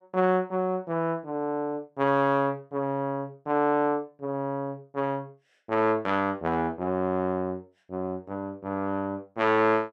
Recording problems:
none

